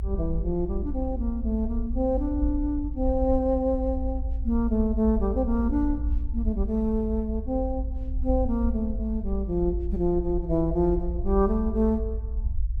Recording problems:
low-frequency rumble; below 58 Hz, SNR 4 dB

